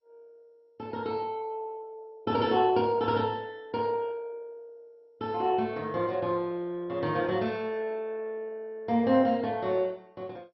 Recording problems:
lossy compression; MP2, log-spectral distance 2 dB, nothing above 5.5 kHz

